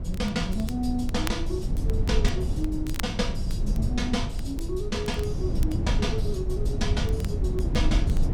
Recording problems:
rumble; below 100 Hz, SNR -2 dB
crackle; vinyl, SNR 14 dB

